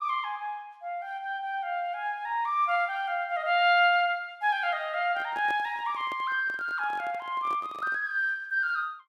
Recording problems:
microphone handling noise; from 5 to 8 s; peak -10 dB vs average level

